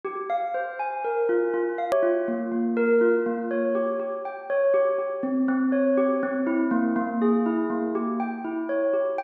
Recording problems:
edit click; at 2 s

